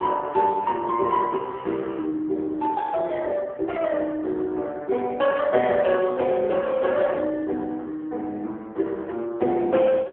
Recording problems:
phone line; 260 Hz to 3.4 kHz, AMR-NB

